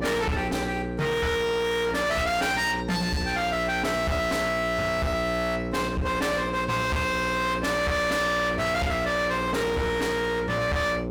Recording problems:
distorted audio; hard clipping, uneven, signal-to-distortion ratio 6 dB
hum; 60 Hz, harmonics up to 2.1 kHz, SNR 6 dB

